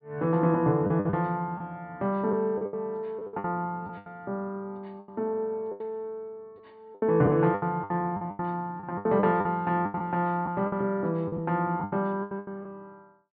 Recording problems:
treble cut off; nothing above 4.6 kHz
lost packets; 13% of the sound replaced, filled with the last packet

